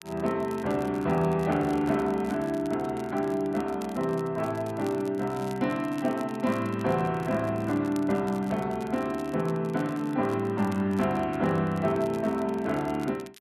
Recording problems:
crackle; vinyl, SNR 23 dB

